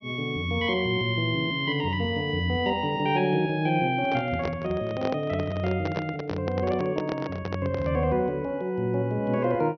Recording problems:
treble missing; nothing above 6.1 kHz
handling noise; from 4 to 8 s; peak 0 dB vs average level

